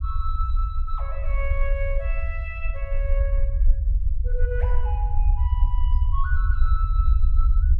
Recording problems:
low-frequency rumble; below 62 Hz, SNR -10 dB

